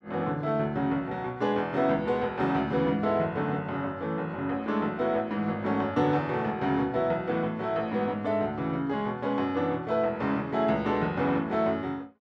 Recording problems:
none

